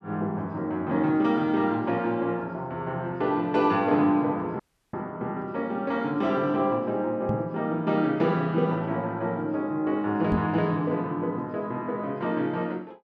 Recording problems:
audio cutting out; at 4.5 s
knock on the microphone; at 7.5 s and at 10 s; peak +2 dB vs average level

